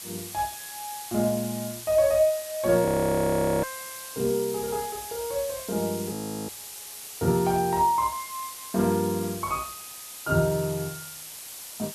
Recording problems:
hiss; slope +1 dB per octave, SNR 10 dB
audio freezing; at 3 s for 1 s and at 6 s

